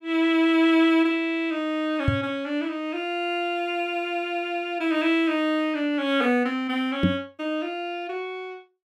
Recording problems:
microphone bump; at 2 s and at 7 s; peak +7 dB vs average level

